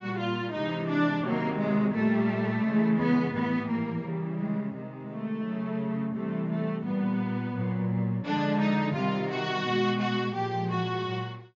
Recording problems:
treble missing; nothing above 7.3 kHz

